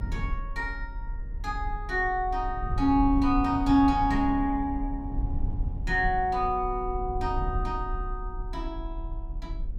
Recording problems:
rumble; below 72 Hz, strongest tone 34 Hz, SNR 8 dB

